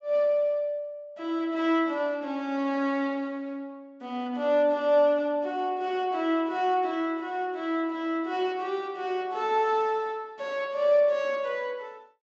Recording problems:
low-pass filter; nothing above 7.8 kHz

